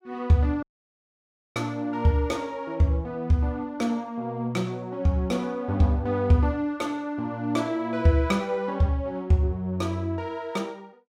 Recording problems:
dropout; at 0.5 s for 1 s

